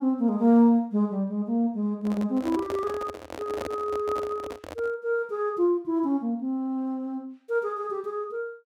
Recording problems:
microphone handling noise; from 2 to 5 s; peak -4 dB vs average level

